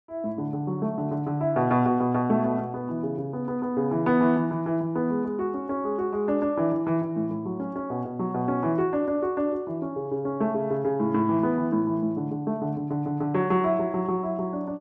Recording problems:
none

